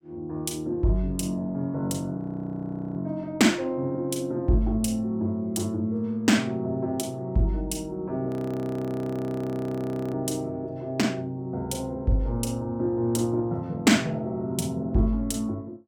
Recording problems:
frozen audio; at 2 s for 1 s and at 8.5 s for 2 s

